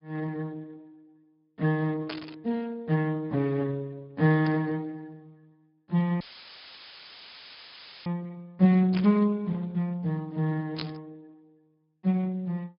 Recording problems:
treble missing; nothing above 5 kHz
codec artefacts; Speex, log-spectral distance 2 dB
burst of static; 4 times, first at 2 s; peak -2 dB vs average level
audio cutting out; at 6 s for 2 s; filled with static

